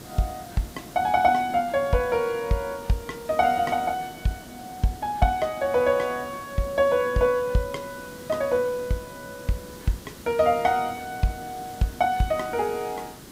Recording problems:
hiss; SNR 17 dB

